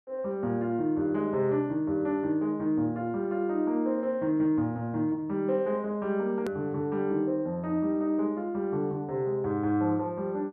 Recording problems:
edit click; at 6.5 s

